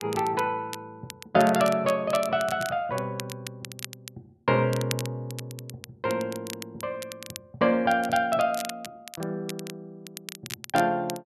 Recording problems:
crackling; vinyl, SNR 14 dB

